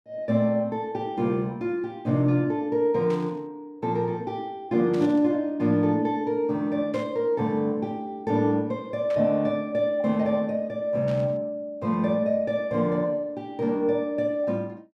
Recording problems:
static burst; 5 times, first at 3 s; peak -13 dB vs average level

